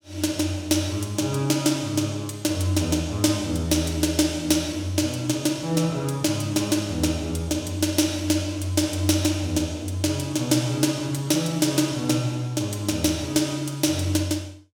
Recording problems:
none

